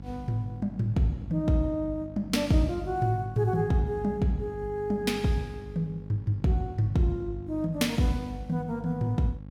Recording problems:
electrical hum; 50 Hz, harmonics up to 550 Hz, SNR 14 dB

